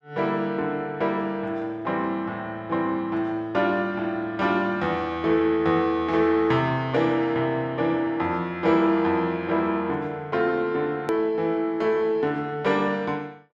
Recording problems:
edit click; at 11 s

